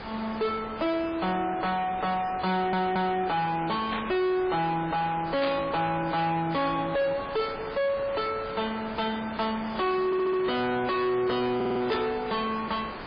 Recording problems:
lossy compression; MP3, log-spectral distance 6 dB, nothing above 4.5 kHz
distorted audio; soft clipping, signal-to-distortion ratio 6 dB
background hiss; SNR 12 dB
audio stuttering; at 2.5 s, at 10 s and at 12 s
static burst; at 4 s, at 5.5 s and at 12 s; peak -2 dB vs average level

